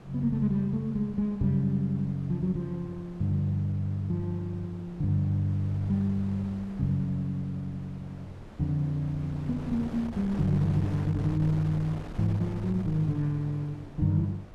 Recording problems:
wind on the microphone; below 510 Hz, SNR 16 dB

